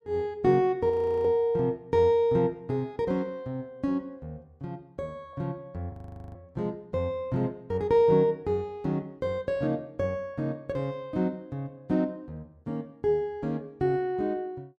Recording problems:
audio freezing; at 1 s and at 6 s

